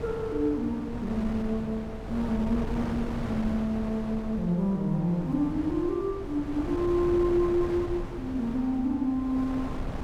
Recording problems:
wind on the microphone; below 420 Hz, SNR 8 dB

